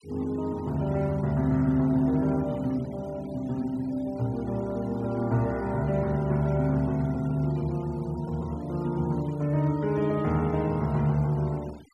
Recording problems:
noise reduction artefacts; signal-to-artefact ratio 24 dB

